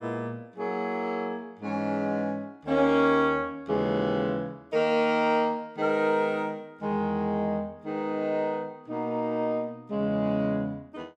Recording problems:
none

